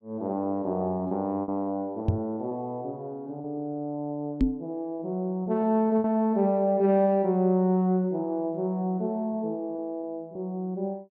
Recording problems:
lost packets; 4% of the sound replaced, filled with repeated pitch periods
knock on the microphone; at 2 s and at 4.5 s; peak +8 dB vs average level

